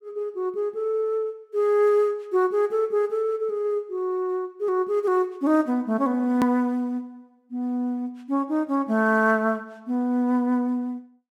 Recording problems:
click at an edit; at 6.5 s

